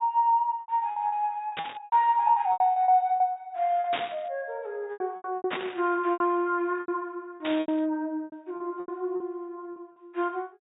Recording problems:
treble cut off; nothing above 4 kHz
lost packets; 14% of the sound replaced, filled with repeated pitch periods
static burst; 4 times, first at 1.5 s; peak -1 dB vs average level

